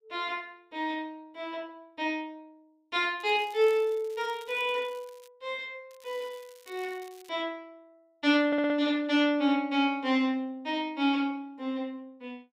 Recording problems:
crackling; from 3 to 5.5 s and from 6 to 7.5 s; loose cable, SNR 26 dB
stutter; at 8.5 s

